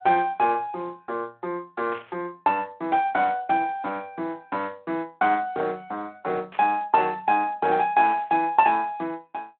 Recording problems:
phone line; 220 Hz to 3.3 kHz, Speex
static burst; at 2 s, at 6.5 s and at 8 s; peak -11 dB vs average level

